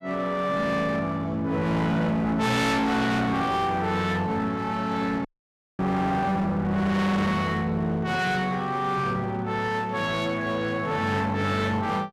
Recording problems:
distortion; hard clipping, uneven, signal-to-distortion ratio 7 dB
audio cutting out; at 5.5 s for 0.5 s

